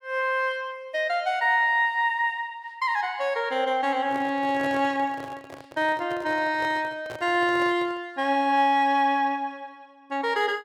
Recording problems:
microphone handling noise; from 4 to 8 s; peak -9 dB vs average level

